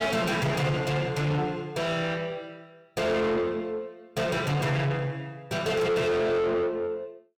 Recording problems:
distorted audio; soft clipping, signal-to-distortion ratio 6 dB

